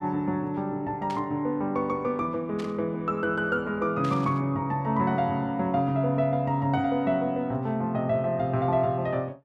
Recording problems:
burst of static; at 1 s, at 2.5 s and at 4 s; peak -10 dB vs average level

